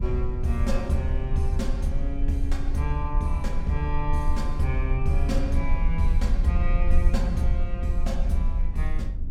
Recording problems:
rumble; below 50 Hz, SNR 0 dB

